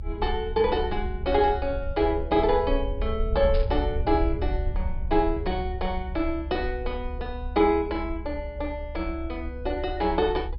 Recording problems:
low-pass filter; nothing above 5.5 kHz
low-frequency rumble; below 68 Hz, SNR 6 dB
static burst; at 3.5 s; peak -9 dB vs average level

